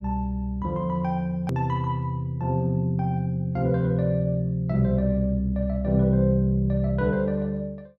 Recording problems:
hard cut with a click; at 1.5 s

